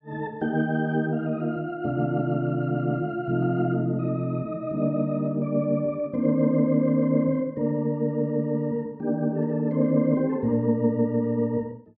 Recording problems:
none

